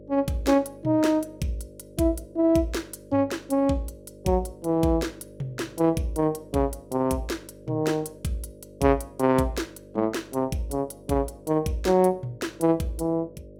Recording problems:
hum; 50 Hz, harmonics up to 600 Hz, SNR 21 dB

